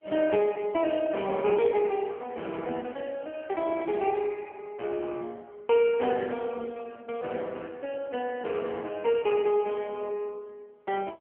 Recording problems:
telephone audio; 280 Hz to 3.3 kHz, AMR-NB

